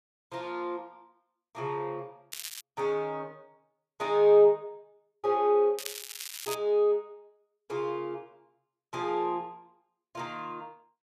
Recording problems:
crackle; at 2.5 s and at 6 s; loose cable, SNR 11 dB

